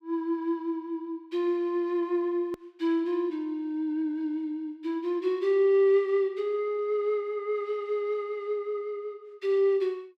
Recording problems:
hard cut with a click; at 2.5 s

